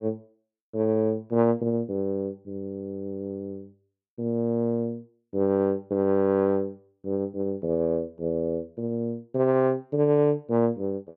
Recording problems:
none

